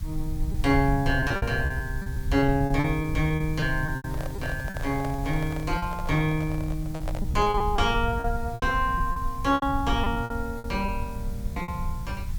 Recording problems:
background hiss; slope 0 dB per octave, SNR 22 dB
low-frequency rumble; below 84 Hz, SNR 6 dB
packet loss; 12% of the sound replaced, filled with repeated pitch periods
handling noise; from 4 to 7.5 s; peak -4 dB vs average level

